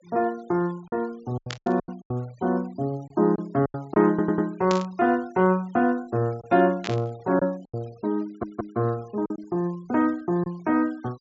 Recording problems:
low-pass filter; nothing above 8 kHz
denoising artefacts; signal-to-artefact ratio 27 dB
lost packets; 6% of the sound replaced, filled with silence
burst of static; at 1.5 s, at 4.5 s and at 7 s; peak -2 dB vs average level
audio stuttering; at 4 s and at 8.5 s

